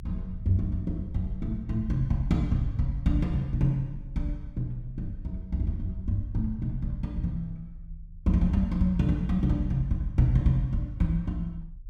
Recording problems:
low-frequency rumble; below 62 Hz, strongest tone 32 Hz, SNR 14 dB

